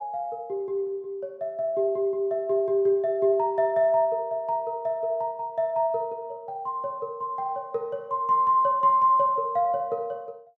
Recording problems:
none

